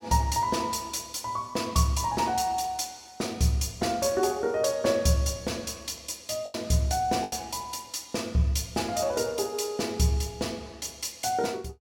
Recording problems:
lost packets; 1.4% of the sound replaced, filled with the last packet

